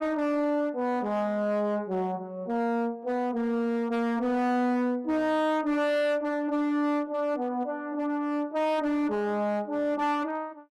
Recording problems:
distortion; hard clipping, signal-to-distortion ratio 11 dB

